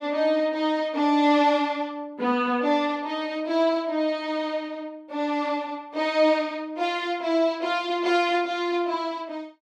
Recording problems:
none

